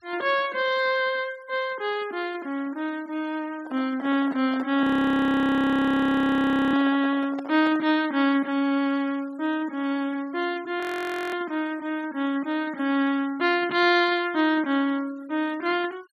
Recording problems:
noise reduction artefacts; signal-to-artefact ratio 25 dB
microphone handling noise; from 3.5 to 8 s; peak -9 dB vs average level
frozen audio; at 5 s for 2 s and at 11 s for 0.5 s

